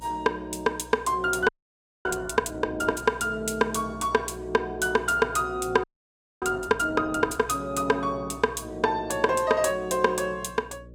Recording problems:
electrical hum; 60 Hz, harmonics up to 600 Hz, SNR 20 dB
frozen audio; at 1.5 s for 0.5 s and at 6 s for 0.5 s

